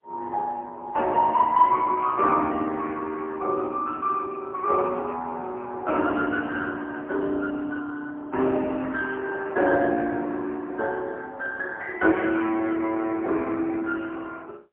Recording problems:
phone line; 260 Hz to 3.3 kHz, AMR-NB, then MP3

